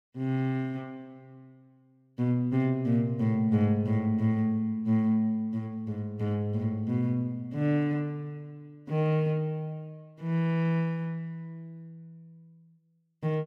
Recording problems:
none

